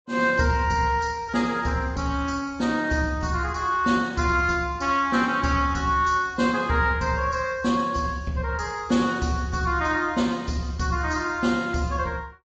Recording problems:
treble missing; nothing above 8 kHz
lossy compression; AAC, log-spectral distance 3 dB

